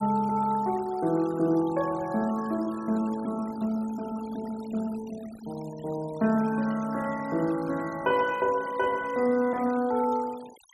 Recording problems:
noise reduction artefacts; signal-to-artefact ratio 20 dB

